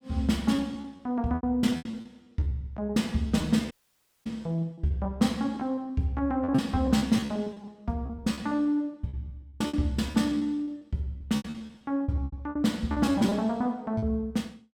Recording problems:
lost packets; 19% of the sound replaced, filled with repeated pitch periods
audio cutting out; at 3.5 s for 0.5 s

